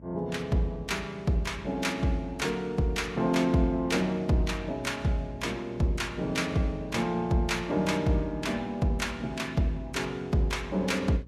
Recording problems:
lossy compression; Vorbis, log-spectral distance 2 dB, nothing above 13.8 kHz
hum; 60 Hz, harmonics up to 600 Hz, SNR 22 dB

